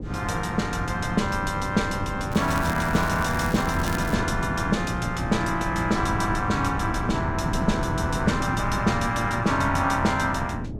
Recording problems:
wind noise; below 260 Hz, SNR 6 dB
crackling; from 2.5 to 4 s; loose cable, SNR 14 dB

